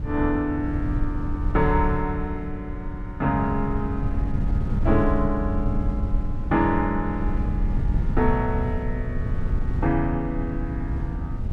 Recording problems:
wind noise; below 100 Hz, SNR 2 dB

